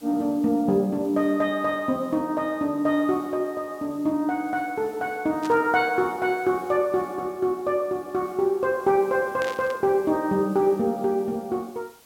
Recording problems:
hiss; SNR 27 dB
static burst; at 5.5 s and at 9.5 s; peak -9 dB vs average level

